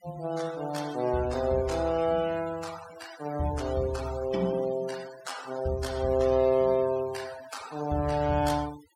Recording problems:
denoising artefacts; signal-to-artefact ratio 16 dB

